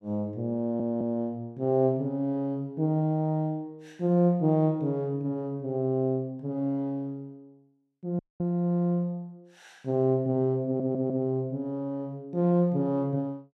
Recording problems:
audio stuttering; at 0.5 s and at 11 s
audio cutting out; at 8 s

